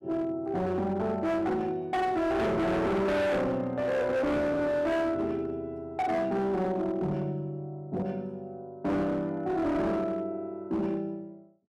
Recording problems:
distortion; hard clipping, signal-to-distortion ratio 7 dB

